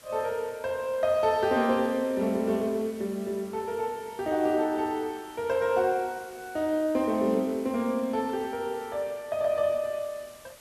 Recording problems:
hiss; slope -1 dB per octave, SNR 22 dB

